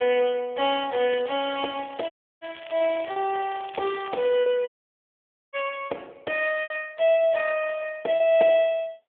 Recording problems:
phone line; 340 Hz to 3.4 kHz, AMR-NB
lost packets; 4% of the sound replaced, filled with repeated pitch periods
crackle; from 1 to 4 s; loose cable, SNR 19 dB
audio cutting out; at 2 s and at 4.5 s for 1 s

